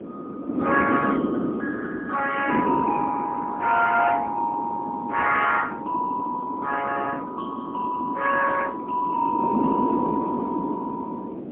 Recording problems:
phone line; 370 Hz to 2.8 kHz, AMR-NB, then MP3
wind noise; below 420 Hz, SNR 4 dB

